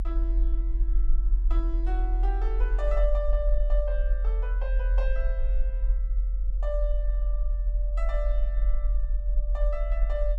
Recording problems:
low-frequency rumble; below 44 Hz, strongest tone 42 Hz, SNR -9 dB

